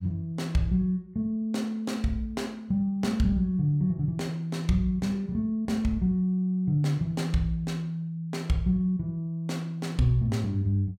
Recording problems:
none

